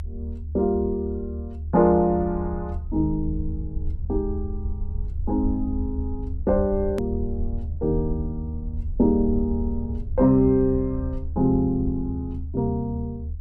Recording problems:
low-frequency rumble; below 78 Hz, SNR 7 dB
click at an edit; at 7 s

